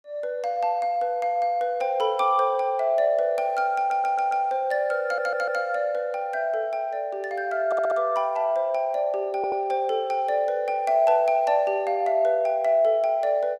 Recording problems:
stutter; 4 times, first at 4 s

